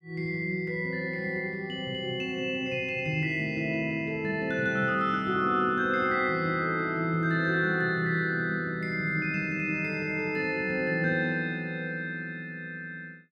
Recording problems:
none

